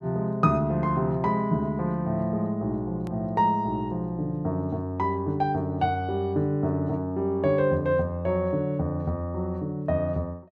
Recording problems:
edit click; at 3 s

